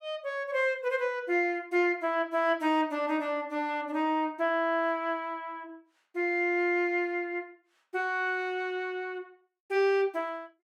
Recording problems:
none

